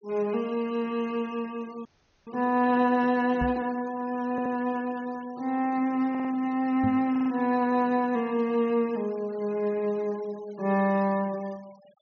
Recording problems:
treble cut off; nothing above 6.6 kHz
noise reduction artefacts; signal-to-artefact ratio 24 dB
audio freezing; at 2 s
microphone bump; at 3.5 s and at 7 s; peak 0 dB vs average level
stutter; at 4.5 s, at 6 s and at 7 s

